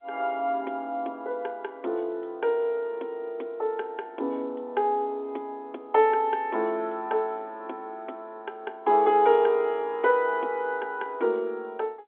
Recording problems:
phone line; 240 Hz to 3.6 kHz, G.711

